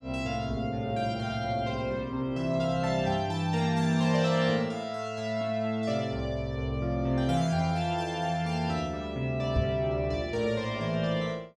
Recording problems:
microphone bump; at 9.5 s; peak +3 dB vs average level

